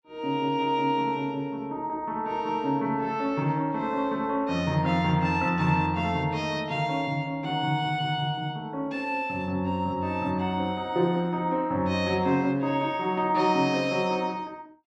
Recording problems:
none

